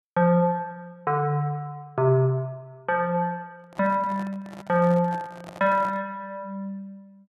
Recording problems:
handling noise; from 3.5 to 6 s; peak -13 dB vs average level

